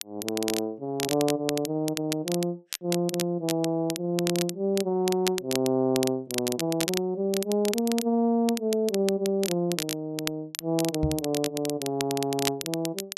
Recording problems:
crackling; vinyl, SNR 7 dB
microphone thump; at 11 s; peak +3 dB vs average level

